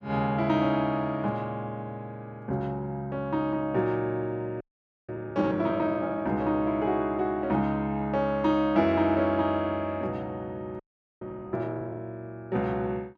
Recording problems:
audio freezing; at 4.5 s and at 11 s

